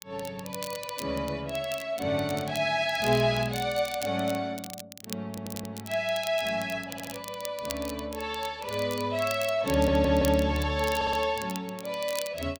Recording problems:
crackle; vinyl, SNR 13 dB
stutter; 4 times, first at 5.5 s

